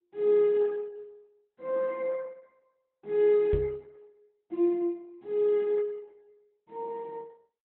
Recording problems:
lossy compression; Opus, log-spectral distance 2 dB, nothing above 3.9 kHz
microphone thump; at 3.5 s; peak -1 dB vs average level

